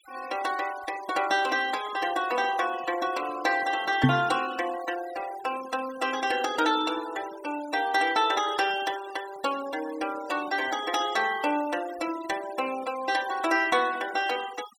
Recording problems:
denoising artefacts; signal-to-artefact ratio 15 dB
knock on the microphone; at 4 s; peak +10 dB vs average level

